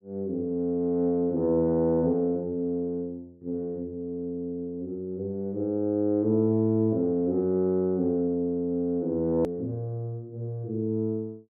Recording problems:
edit click; at 9.5 s

